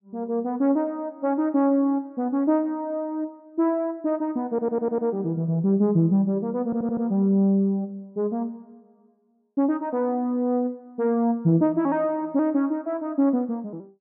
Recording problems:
stutter; at 4.5 s and at 6.5 s

